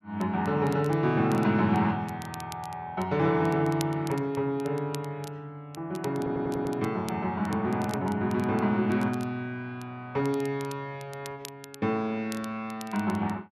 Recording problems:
crackling; vinyl, SNR 20 dB
audio stuttering; at 6 s

